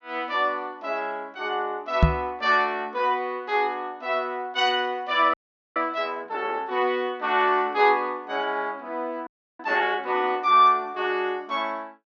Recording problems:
treble missing; nothing above 7.4 kHz
microphone bump; at 2 s; peak +9 dB vs average level
frozen audio; at 5.5 s and at 9.5 s

